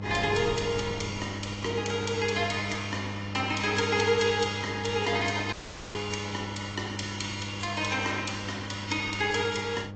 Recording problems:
treble cut off; nothing above 7.6 kHz
lossy codec; AAC, log-spectral distance 5 dB
electrical hum; 50 Hz, harmonics up to 1.1 kHz, SNR 9 dB
wind on the microphone; below 440 Hz, SNR 18 dB
audio cutting out; at 5.5 s

